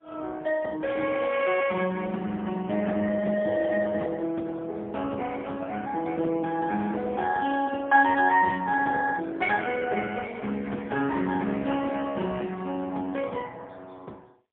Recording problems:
phone line; 190 Hz to 2.8 kHz, AMR-NB, then MP3

